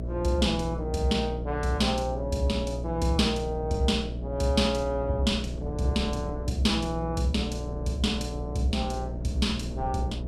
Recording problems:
electrical hum; 60 Hz, harmonics up to 660 Hz, SNR 6 dB
wind on the microphone; below 280 Hz, SNR 15 dB

